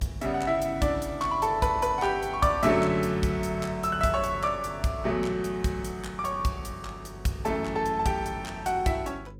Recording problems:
hum; 50 Hz, harmonics up to 550 Hz, SNR 18 dB

